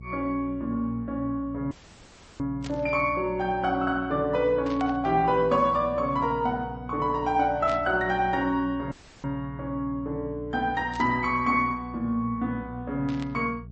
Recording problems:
lossy codec; MP3, log-spectral distance 2 dB, nothing above 7.3 kHz
hum; 60 Hz, harmonics up to 420 Hz, SNR 16 dB
audio cutting out; at 1.5 s for 0.5 s and at 9 s
burst of static; 5 times, first at 2.5 s; peak -10 dB vs average level

